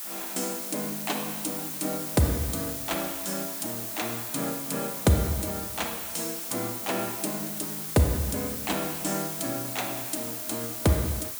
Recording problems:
hiss; slope +1 dB per octave, SNR 2 dB

